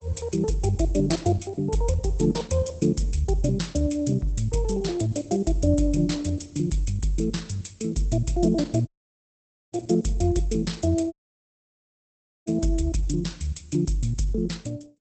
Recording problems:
lossy compression; Opus, log-spectral distance 4 dB, nothing above 8.2 kHz
dropout; at 9 s for 1 s and at 11 s for 1.5 s

